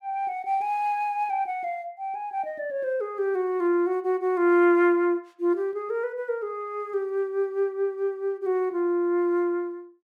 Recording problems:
none

